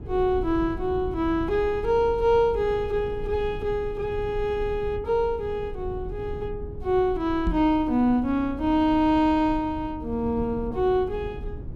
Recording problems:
low-frequency rumble; below 120 Hz, SNR 13 dB
microphone bump; at 7.5 s; peak +1 dB vs average level

